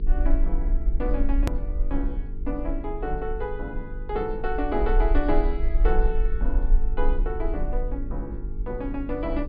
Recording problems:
treble cut off; nothing above 5 kHz
hum; 50 Hz, harmonics up to 450 Hz, SNR 9 dB
rumble; below 40 Hz, strongest tone 20 Hz, SNR -2 dB
edit click; at 1.5 s

